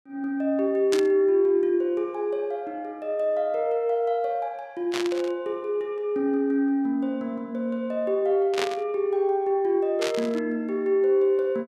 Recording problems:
burst of static; 4 times, first at 1 s; peak 0 dB vs average level

